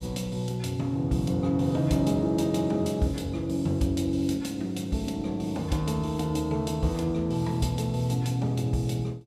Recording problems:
none

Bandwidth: 14 kHz